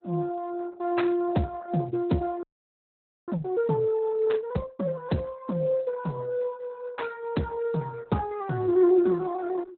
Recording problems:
lossy codec; Speex, then Opus, log-spectral distance 3 dB, nothing above 4.1 kHz
audio freezing; at 2.5 s for 1 s

